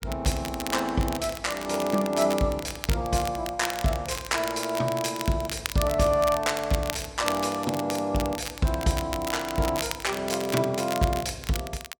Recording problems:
crackle; vinyl, SNR 9 dB

